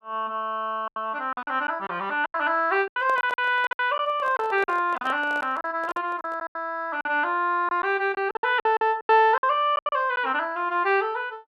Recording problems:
packet loss; 12% of the sound replaced, filled with silence
handling noise; from 3 to 6.5 s; peak -8 dB vs average level

